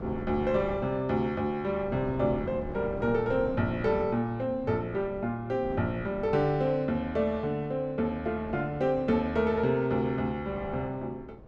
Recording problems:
wind noise; below 410 Hz, SNR 14 dB

